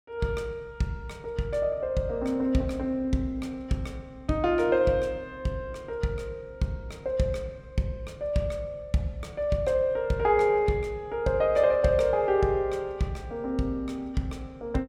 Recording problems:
none

